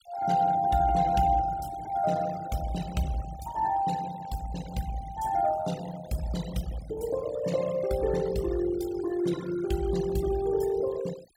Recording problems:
noise reduction artefacts; signal-to-artefact ratio 16 dB

